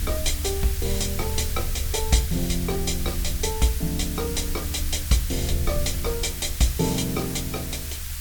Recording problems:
background hiss; SNR 6 dB
rumble; below 76 Hz, SNR 5 dB

